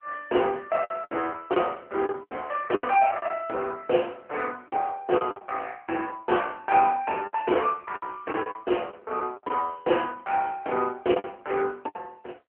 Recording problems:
phone line; 280 Hz to 3.1 kHz, AMR-NB
packet loss; 9% of the sound replaced, filled with the last packet

